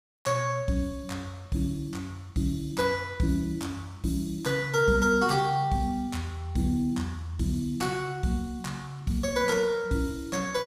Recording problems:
none

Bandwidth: 15.5 kHz